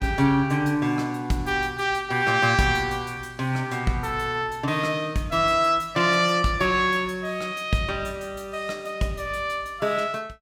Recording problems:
none

